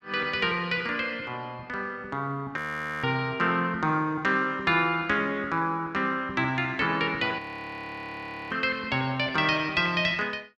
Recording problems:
audio freezing; at 2.5 s and at 7.5 s for 1 s

